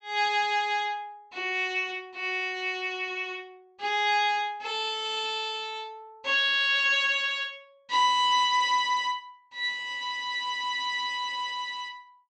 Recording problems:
treble cut off; nothing above 8 kHz

